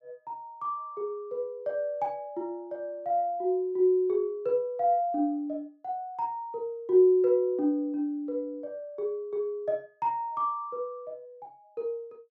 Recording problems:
none

